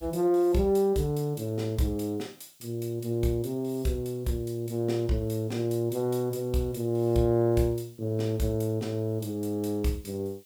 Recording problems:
hiss; SNR 28 dB

